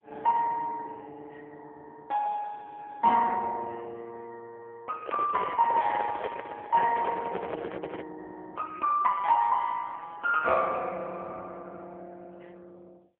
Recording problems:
phone line; 280 Hz to 3.3 kHz, AMR-NB
microphone handling noise; from 5 to 8 s; peak -4 dB vs average level

